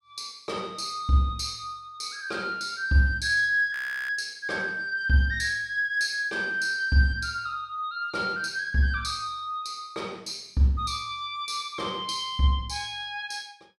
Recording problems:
frozen audio; at 3.5 s

